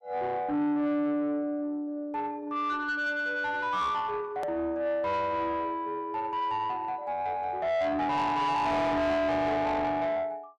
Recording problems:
distortion; soft clipping, signal-to-distortion ratio 7 dB
click at an edit; at 4.5 s

